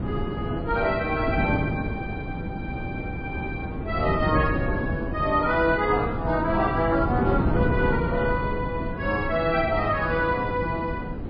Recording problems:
lossy compression; MP3, log-spectral distance 2 dB, nothing above 4.4 kHz
wind noise; below 310 Hz, SNR 4 dB

